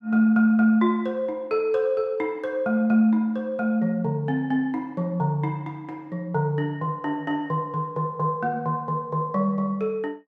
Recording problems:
none

